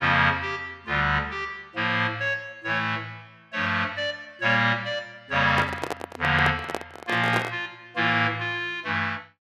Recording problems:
microphone handling noise; from 5.5 to 7.5 s; peak +1 dB vs average level

